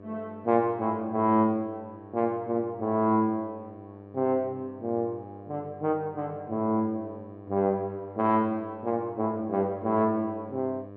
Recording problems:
hum; 50 Hz, harmonics up to 1.2 kHz, SNR 18 dB

